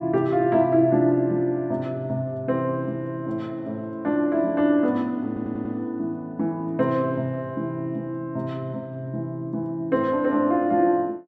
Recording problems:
stutter; at 5.5 s

